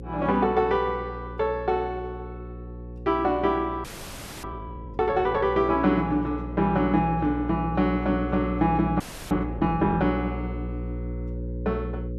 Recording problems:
hum; 60 Hz, harmonics up to 540 Hz, SNR 10 dB
audio freezing; at 4 s for 0.5 s and at 9 s

